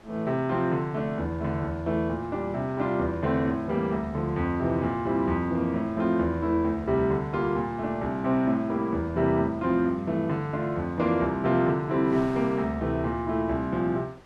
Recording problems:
wind noise; below 1.4 kHz, SNR 24 dB

